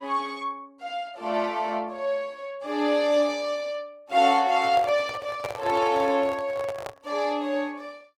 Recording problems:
lossy codec; Opus, log-spectral distance 2 dB
microphone handling noise; from 4.5 to 7 s; peak -4 dB vs average level

